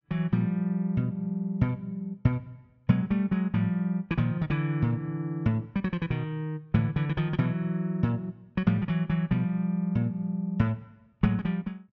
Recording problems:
low-pass filter; nothing above 7.7 kHz

